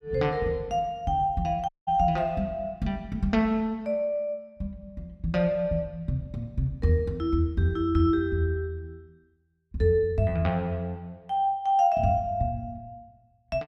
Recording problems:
audio cutting out; at 1.5 s

